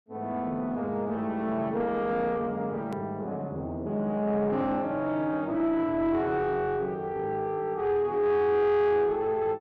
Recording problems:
distorted audio; soft clipping, signal-to-distortion ratio 11 dB
hard cut with a click; at 3 s

